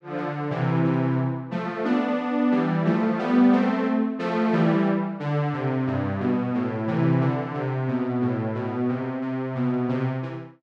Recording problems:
none

